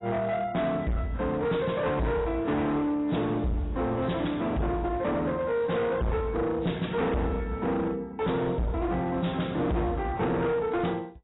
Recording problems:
lossy compression; AAC, log-spectral distance 3 dB, nothing above 3.8 kHz
distortion; hard clipping, signal-to-distortion ratio 6 dB

